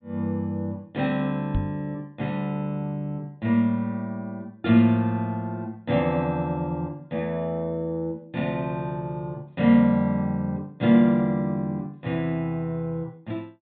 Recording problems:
treble cut off; nothing above 4 kHz
knock on the microphone; at 1.5 s; peak +2 dB vs average level

